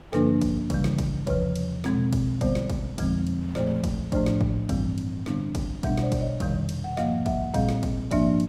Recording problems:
wind on the microphone; below 570 Hz, SNR 21 dB

